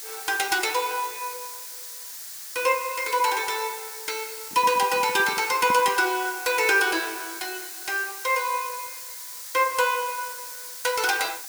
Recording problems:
background hiss; SNR 10 dB
handling noise; from 4.5 to 6 s; peak -7 dB vs average level

